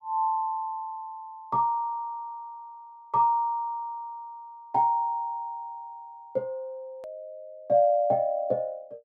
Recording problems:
hard cut with a click; at 7 s

